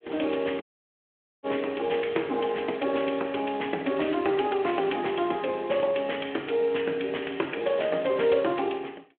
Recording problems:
phone line; 240 Hz to 3.3 kHz, Speex
audio cutting out; at 0.5 s for 1 s

